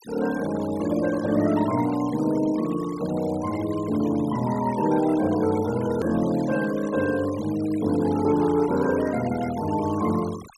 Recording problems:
noise reduction artefacts; signal-to-artefact ratio 17 dB
click at an edit; at 6 s

